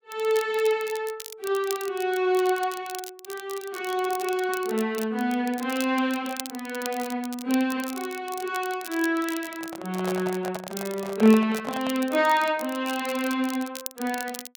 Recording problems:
crackle; vinyl, SNR 14 dB
microphone handling noise; from 9.5 to 12 s; peak -3 dB vs average level

